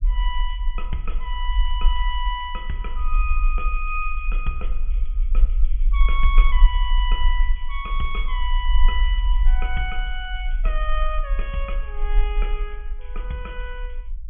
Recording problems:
treble missing; nothing above 3.4 kHz
low-frequency rumble; below 44 Hz, strongest tone 22 Hz, SNR -5 dB

